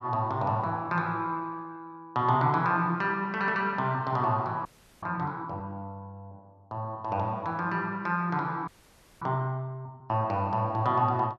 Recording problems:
audio freezing; at 4.5 s and at 8.5 s for 0.5 s

